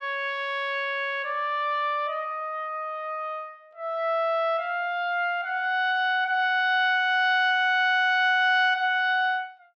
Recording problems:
none

